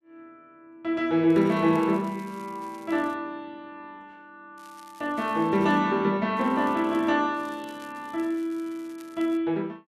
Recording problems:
crackle; 4 times, first at 1.5 s; loose cable, SNR 28 dB

